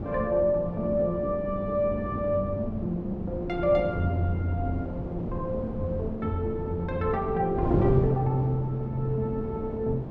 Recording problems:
wind on the microphone; below 340 Hz, SNR 6 dB

